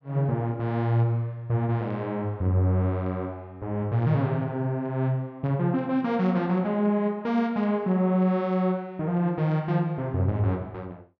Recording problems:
none

